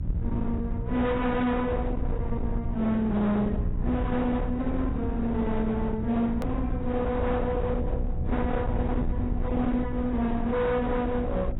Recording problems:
lossy codec; Vorbis, then AAC, log-spectral distance 2 dB, nothing above 17.1 kHz
distorted audio; hard clipping, signal-to-distortion ratio 8 dB
hum; 60 Hz, harmonics up to 660 Hz, SNR 11 dB
low-frequency rumble; below 120 Hz, SNR 5 dB
edit click; at 6.5 s

